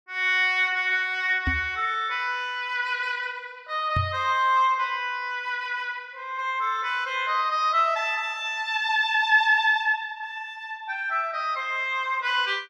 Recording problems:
microphone bump; at 1.5 s and at 4 s; peak 0 dB vs average level

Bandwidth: 12.5 kHz